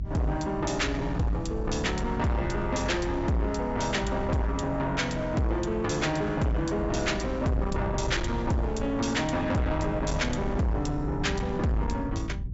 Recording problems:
treble missing; nothing above 8 kHz
distorted audio; soft clipping, signal-to-distortion ratio 6 dB
low-frequency rumble; below 140 Hz, SNR 7 dB

